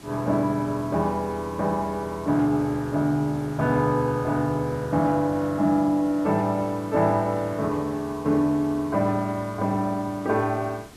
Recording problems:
background hiss; SNR 21 dB

